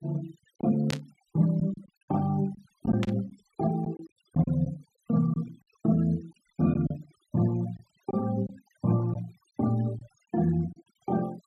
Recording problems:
denoising artefacts; signal-to-artefact ratio 22 dB
packet loss; 5% of the sound replaced, filled with silence
static burst; at 1 s and at 3 s; peak -1 dB vs average level

